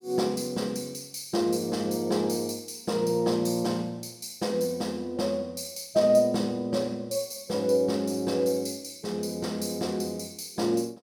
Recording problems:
none

